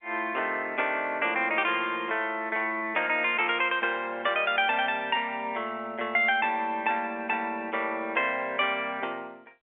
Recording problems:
telephone audio; 280 Hz to 3.6 kHz, G.711

